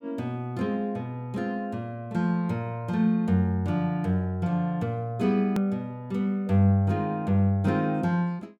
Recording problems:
click at an edit; at 5.5 s

